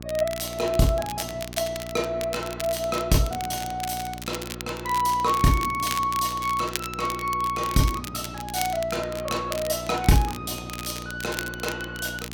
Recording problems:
hum; 60 Hz, harmonics up to 1.2 kHz, SNR 13 dB
crackling; vinyl, SNR 11 dB

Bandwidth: 17 kHz